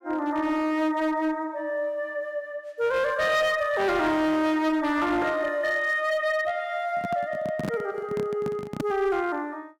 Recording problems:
distortion; hard clipping, signal-to-distortion ratio 10 dB
microphone handling noise; from 7 to 9 s; peak 0 dB vs average level

